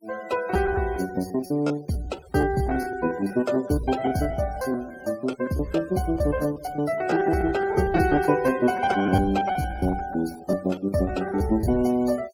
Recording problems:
noise reduction artefacts; signal-to-artefact ratio 20 dB
lost packets; 14% of the sound replaced, filled with repeated pitch periods

